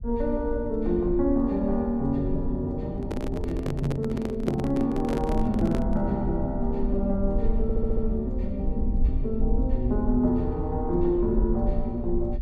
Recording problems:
rumble; below 56 Hz, SNR 6 dB
handling noise; from 3 to 6 s; peak +1 dB vs average level
audio stuttering; at 7.5 s

